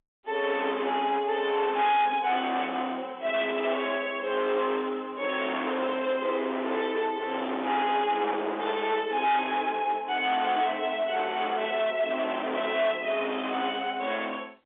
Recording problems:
phone line; 280 Hz to 3.7 kHz, G.711
distortion; hard clipping, signal-to-distortion ratio 9 dB

